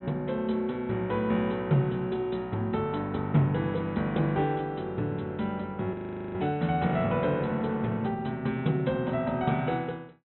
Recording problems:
low-pass filter; nothing above 4 kHz
audio freezing; at 6 s

